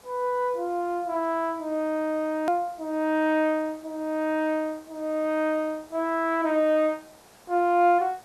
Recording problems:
hiss; SNR 26 dB
edit click; at 2.5 s

